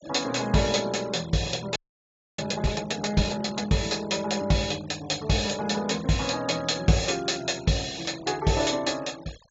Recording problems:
treble cut off; nothing above 7.5 kHz
denoising artefacts; signal-to-artefact ratio 20 dB
frozen audio; at 2 s for 0.5 s

